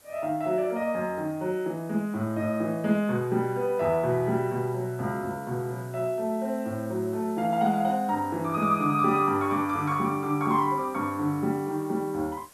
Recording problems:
background hiss; slope -2 dB per octave, SNR 25 dB

